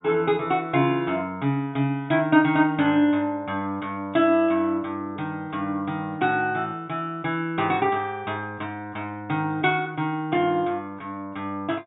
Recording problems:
low-pass filter; nothing above 3.8 kHz

